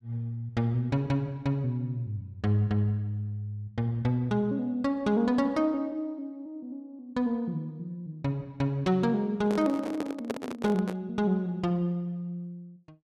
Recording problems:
microphone handling noise; from 9.5 to 11 s; peak +1 dB vs average level

